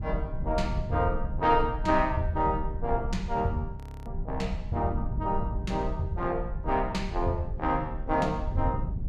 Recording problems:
low-frequency rumble; below 76 Hz, SNR 7 dB
wind on the microphone; below 130 Hz, SNR 10 dB
frozen audio; at 4 s

